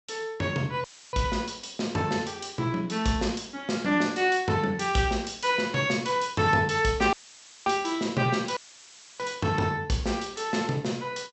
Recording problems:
treble missing; nothing above 7.9 kHz
dropout; at 1 s, at 7 s for 0.5 s and at 8.5 s for 0.5 s; filled with static

